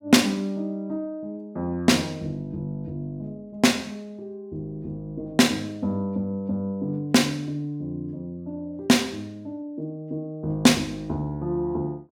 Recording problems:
none

